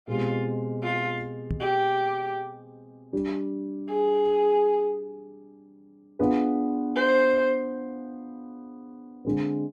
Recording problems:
microphone bump; at 1.5 s; peak -1 dB vs average level

